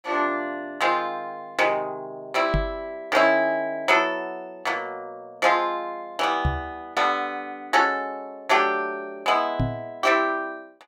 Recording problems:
microphone thump; at 2.5 s, at 6.5 s and at 9.5 s; peak +3 dB vs average level

